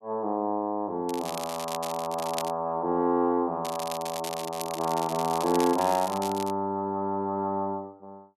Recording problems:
crackling; from 1 to 2.5 s and from 3.5 to 6.5 s; loose cable, SNR 11 dB

